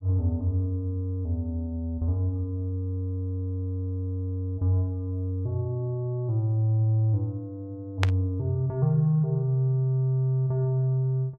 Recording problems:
static burst; at 8 s; peak +3 dB vs average level

